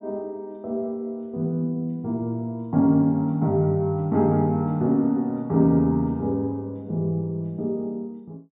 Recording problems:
treble cut off; nothing above 4 kHz

